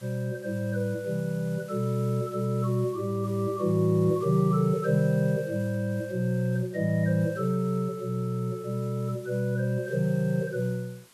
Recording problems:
background hiss; slope -1 dB per octave, SNR 25 dB

